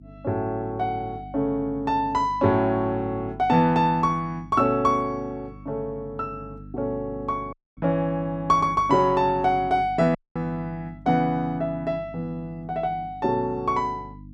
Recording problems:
hum; 50 Hz, harmonics up to 300 Hz, SNR 18 dB
dropout; at 7.5 s and at 10 s

